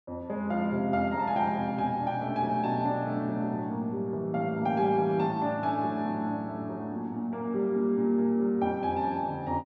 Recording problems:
none

